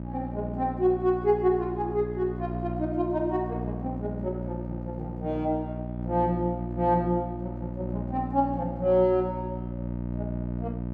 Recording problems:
mains hum; 60 Hz, harmonics up to 900 Hz, SNR 6 dB

